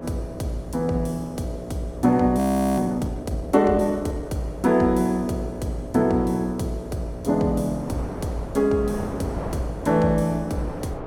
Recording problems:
mains hum; 60 Hz, harmonics up to 660 Hz, SNR 14 dB
wind on the microphone; below 700 Hz, SNR 15 dB
frozen audio; at 2.5 s

